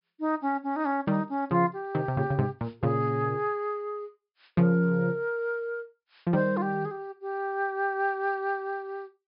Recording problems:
treble missing; nothing above 5.5 kHz

